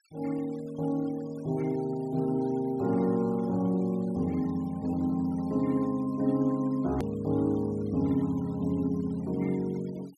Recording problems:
denoising artefacts; signal-to-artefact ratio 25 dB
click at an edit; at 7 s

